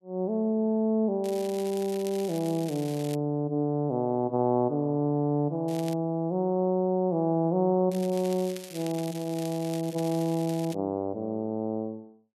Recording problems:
crackling; from 1 to 3 s, at 5.5 s and from 8 to 11 s; loose cable, SNR 17 dB

